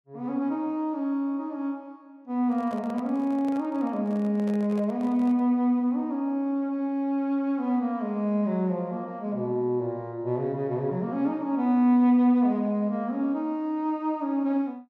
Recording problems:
handling noise; from 2.5 to 5.5 s; peak -11 dB vs average level

